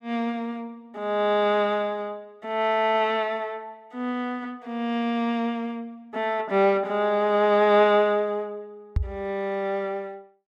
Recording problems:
microphone bump; at 9 s; peak +4 dB vs average level

